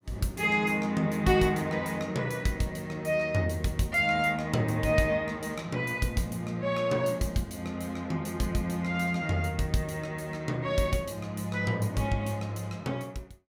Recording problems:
none

